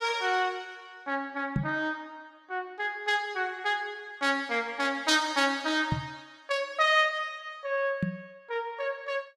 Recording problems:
microphone bump; at 1.5 s, at 6 s and at 8 s; peak +4 dB vs average level

